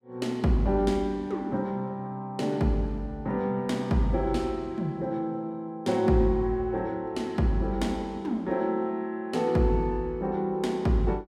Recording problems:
none

